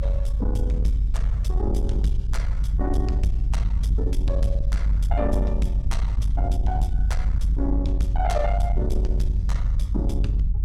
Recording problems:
distortion; soft clipping, signal-to-distortion ratio 12 dB
rumble; below 56 Hz, strongest tone 48 Hz, SNR -5 dB

